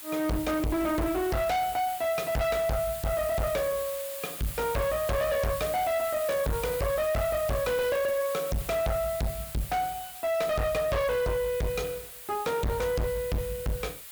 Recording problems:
distortion; hard clipping, signal-to-distortion ratio 6 dB
background hiss; SNR 10 dB

